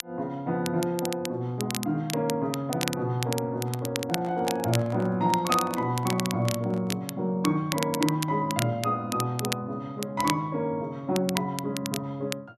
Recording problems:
crackling; vinyl, SNR 8 dB
handling noise; from 3.5 to 7 s; peak -9 dB vs average level

